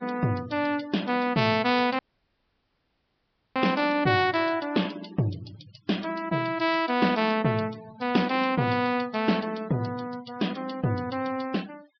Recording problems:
low-pass filter; nothing above 5.5 kHz
denoising artefacts; signal-to-artefact ratio 21 dB
dropout; at 2 s for 1.5 s

